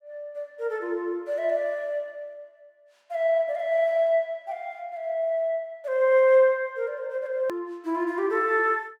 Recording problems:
click at an edit; at 7.5 s

